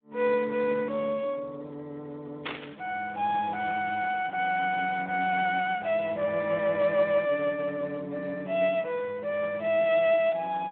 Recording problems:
telephone audio; 190 Hz to 3.7 kHz, Speex
static burst; at 2.5 s; peak -3 dB vs average level

